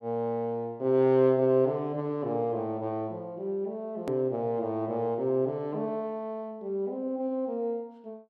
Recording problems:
click at an edit; at 4 s

